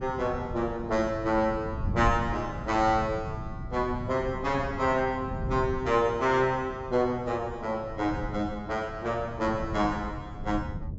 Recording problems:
treble missing; nothing above 8 kHz
wind on the microphone; below 160 Hz, SNR 9 dB

